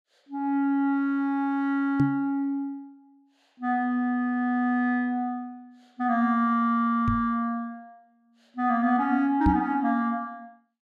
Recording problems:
microphone thump; at 2 s, at 7 s and at 9.5 s; peak +4 dB vs average level

